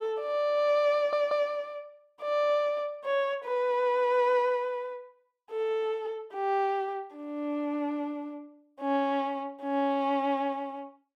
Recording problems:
audio stuttering; at 1 s

